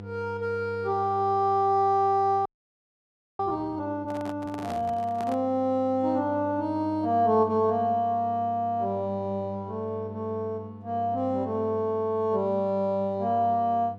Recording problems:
hum; 50 Hz, harmonics up to 800 Hz, SNR 15 dB
audio freezing; at 2.5 s for 1 s
handling noise; from 4 to 5.5 s; peak -7 dB vs average level

